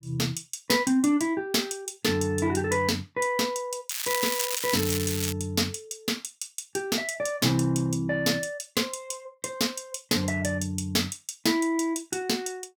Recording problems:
crackle; from 4 to 5.5 s; loose cable, SNR 2 dB

